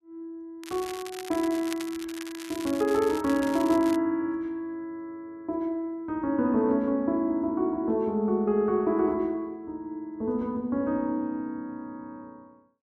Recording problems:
crackling; from 0.5 to 4 s; loose cable, SNR 14 dB

